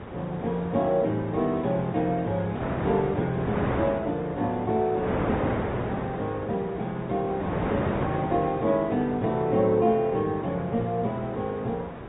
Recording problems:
low-pass filter; nothing above 3.7 kHz
lossy codec; Opus, log-spectral distance 2 dB
hiss; SNR 29 dB
wind noise; below 890 Hz, SNR 7 dB

